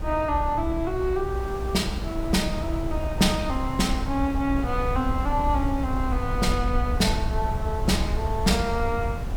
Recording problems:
hiss; slope -7 dB per octave, SNR 12 dB
rumble; below 70 Hz, SNR 7 dB
wind noise; below 82 Hz, SNR 7 dB

